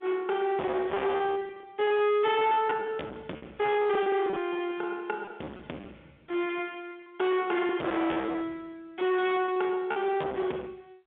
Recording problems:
phone line; 300 Hz to 3.6 kHz, G.711
distortion; hard clipping, uneven, signal-to-distortion ratio 7 dB
packet loss; 16% of the sound replaced, filled with repeated pitch periods

